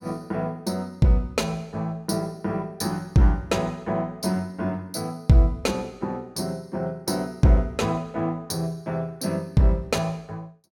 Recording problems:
none

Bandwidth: 17 kHz